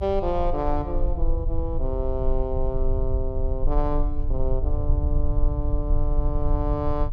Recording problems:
low-frequency rumble; below 54 Hz, strongest tone 24 Hz, SNR -2 dB

